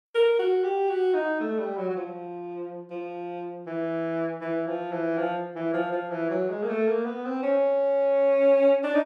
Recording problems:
none

